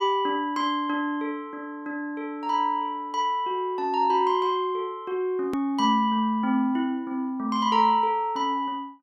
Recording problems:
edit click; at 5.5 s

